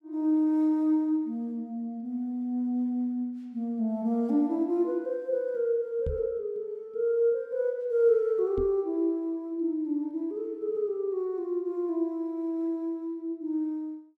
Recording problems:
microphone bump; at 6 s and at 8.5 s; peak -2 dB vs average level

